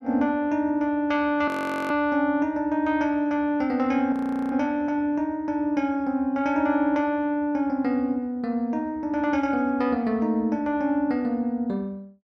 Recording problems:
frozen audio; at 1.5 s and at 4 s

